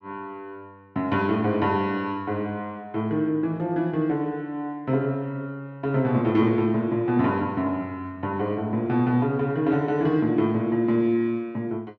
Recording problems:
none

